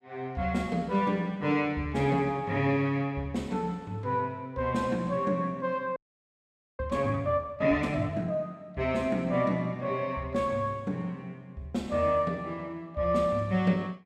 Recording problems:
frozen audio; at 6 s for 1 s

